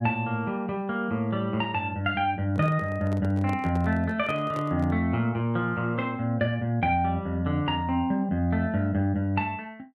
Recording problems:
handling noise; from 2.5 to 5 s; peak -9 dB vs average level

